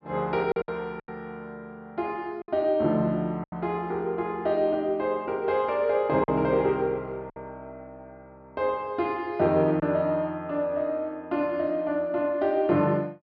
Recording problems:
treble missing; nothing above 5.5 kHz
packet loss; 3% of the sound replaced, filled with silence

